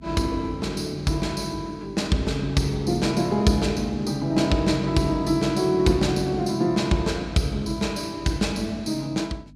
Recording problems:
hum; 50 Hz, harmonics up to 300 Hz, SNR 22 dB

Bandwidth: 15 kHz